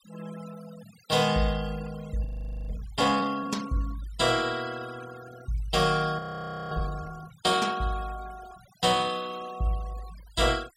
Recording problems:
noise reduction artefacts; signal-to-artefact ratio 18 dB
audio freezing; at 2.5 s and at 6 s for 0.5 s

